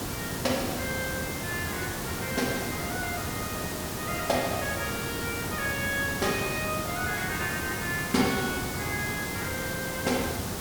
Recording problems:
hiss; slope -4 dB per octave, SNR 1 dB

